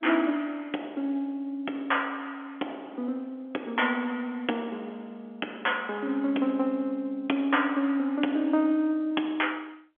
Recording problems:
telephone audio; 220 Hz to 3.4 kHz, G.711

